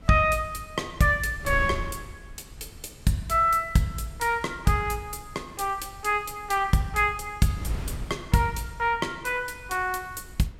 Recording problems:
wind on the microphone; below 140 Hz, SNR 16 dB

